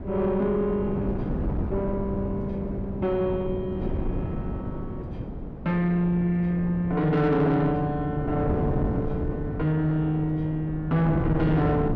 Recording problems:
distorted audio; soft clipping, signal-to-distortion ratio 11 dB
wind on the microphone; below 310 Hz, SNR 6 dB

